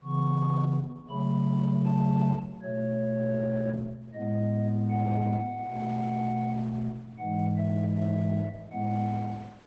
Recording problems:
codec artefacts; Opus, log-spectral distance 2 dB, nothing above 7.8 kHz
wind noise; below 1.5 kHz, SNR 25 dB

